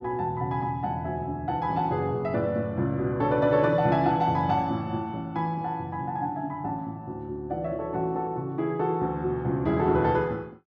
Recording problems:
none

